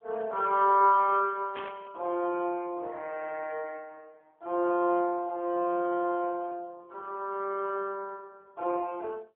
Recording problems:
telephone audio; 280 Hz to 3.1 kHz, AMR-NB
static burst; at 1.5 s; peak -8 dB vs average level

